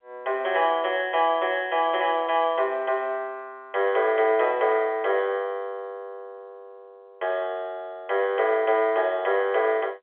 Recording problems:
telephone audio; 280 Hz to 3.4 kHz, G.711

